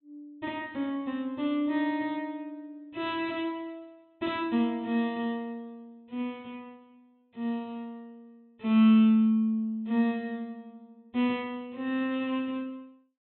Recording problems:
low-pass filter; nothing above 4 kHz

